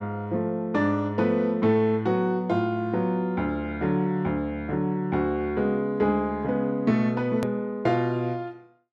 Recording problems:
click at an edit; at 7.5 s

